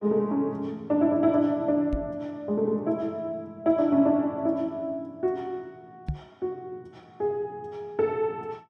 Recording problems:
microphone bump; at 2 s and at 6 s; peak 0 dB vs average level

